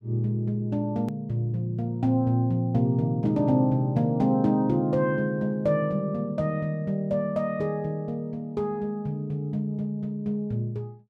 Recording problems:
edit click; at 1 s

